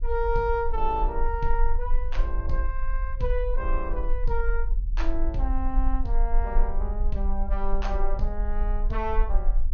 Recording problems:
low-pass filter; nothing above 6.6 kHz
rumble; below 40 Hz, strongest tone 18 Hz, SNR -2 dB

